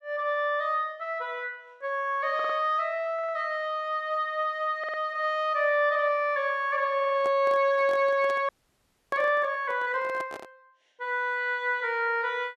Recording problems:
audio stuttering; 4 times, first at 2.5 s
microphone handling noise; from 7 to 11 s; peak -8 dB vs average level
frozen audio; at 8.5 s for 0.5 s

